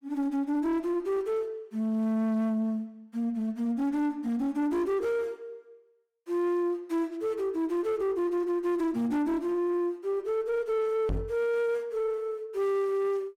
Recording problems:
distortion; soft clipping, signal-to-distortion ratio 10 dB
microphone thump; at 11 s; peak +1 dB vs average level

